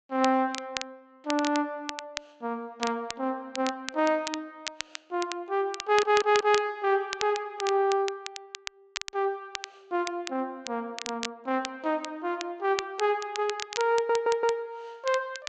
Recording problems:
treble cut off; nothing above 8 kHz
crackling; vinyl, SNR 10 dB
stutter; at 6 s and at 14 s

